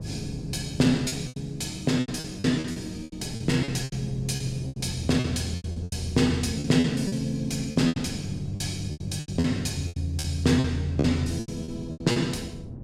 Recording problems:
wind noise; below 220 Hz, SNR 13 dB
packet loss; 15% of the sound replaced, filled with repeated pitch periods

